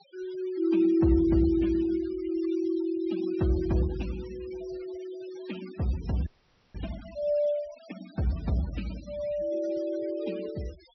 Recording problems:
treble cut off; nothing above 5.8 kHz
noise reduction artefacts; signal-to-artefact ratio 19 dB
audio freezing; at 6.5 s

